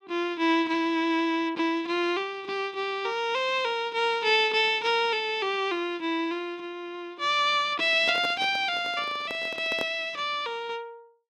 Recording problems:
microphone handling noise; from 8 to 10 s; peak -5 dB vs average level

